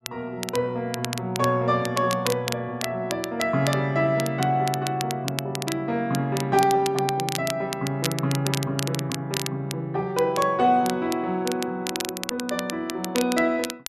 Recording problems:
crackling; vinyl, SNR 9 dB

